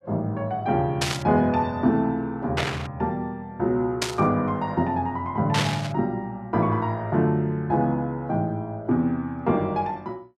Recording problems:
burst of static; 4 times, first at 1 s; peak +4 dB vs average level

